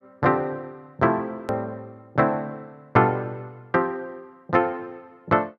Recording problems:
click at an edit; at 1.5 s

